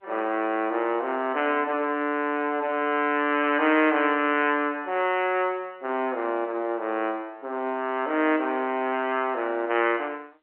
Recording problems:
phone line; 240 Hz to 3.1 kHz, G.711

